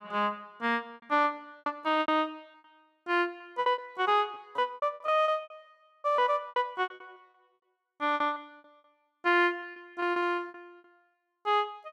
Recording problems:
lost packets; 16% of the sound replaced, filled with repeated pitch periods

